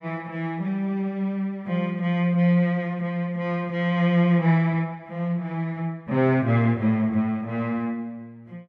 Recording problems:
none

